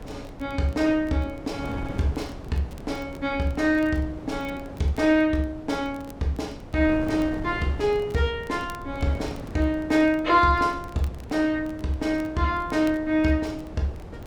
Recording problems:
wind on the microphone; below 440 Hz, SNR 14 dB
crackling; vinyl, SNR 29 dB

